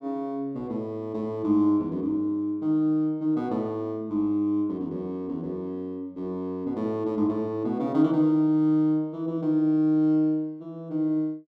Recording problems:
none

